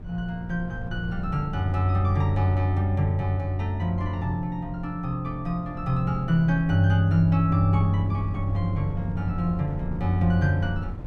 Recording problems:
wind on the microphone; below 110 Hz, SNR 12 dB

